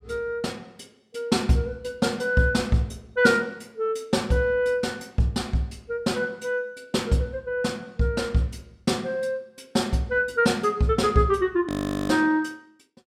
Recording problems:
audio freezing; at 12 s

